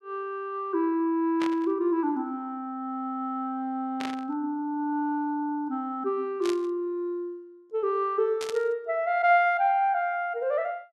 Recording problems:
static burst; 4 times, first at 1.5 s; peak -4 dB vs average level

